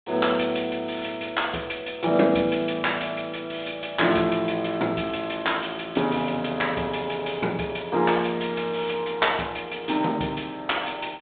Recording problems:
telephone audio; 190 Hz to 3.7 kHz, G.726

